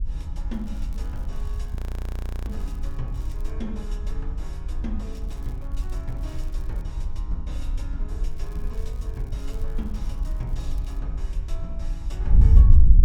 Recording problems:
wind noise; below 68 Hz, SNR -12 dB
crackling; from 0.5 to 3.5 s, from 5 to 7 s and from 8.5 to 11 s; loose cable, SNR 19 dB
audio freezing; at 2 s for 0.5 s

